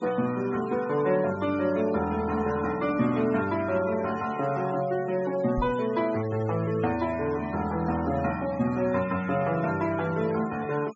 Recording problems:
treble missing; nothing above 8 kHz
noise reduction artefacts; signal-to-artefact ratio 17 dB
microphone bump; at 5.5 s; peak -2 dB vs average level

